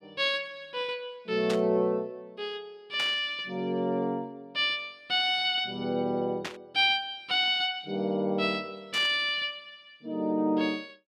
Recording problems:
static burst; 4 times, first at 1.5 s; peak -3 dB vs average level

